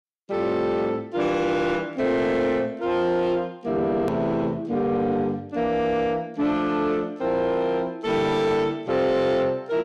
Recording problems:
distortion; soft clipping, signal-to-distortion ratio 12 dB
hard cut with a click; at 4 s

